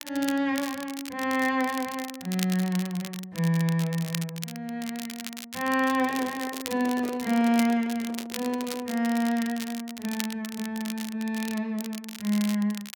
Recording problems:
crackle; vinyl, SNR 11 dB
microphone handling noise; from 6 to 9 s; peak -7 dB vs average level

